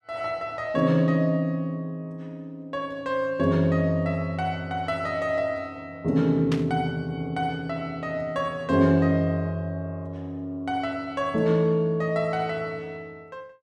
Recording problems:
burst of static; at 6.5 s; peak -4 dB vs average level

